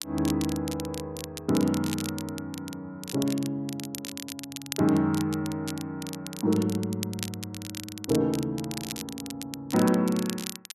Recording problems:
crackle; vinyl, SNR 10 dB

